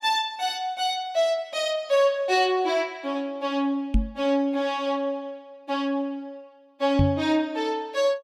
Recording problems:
microphone bump; at 4 s and at 7 s; peak +6 dB vs average level

